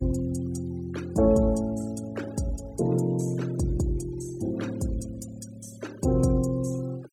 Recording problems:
noise reduction artefacts; signal-to-artefact ratio 21 dB

